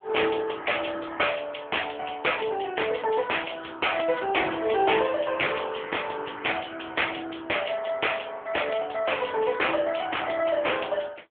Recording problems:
phone line; 300 Hz to 3.4 kHz, AMR-NB

